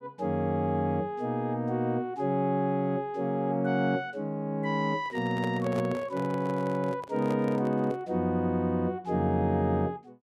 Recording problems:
handling noise; from 5 to 8 s; peak -3 dB vs average level

